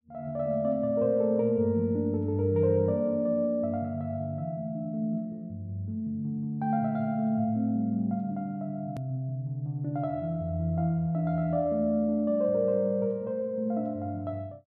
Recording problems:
click at an edit; at 9 s

